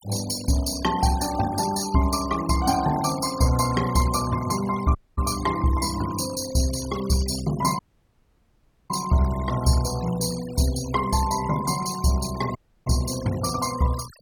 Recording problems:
denoising artefacts; signal-to-artefact ratio 14 dB
dropout; at 5 s, at 8 s for 1 s and at 13 s

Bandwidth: 18 kHz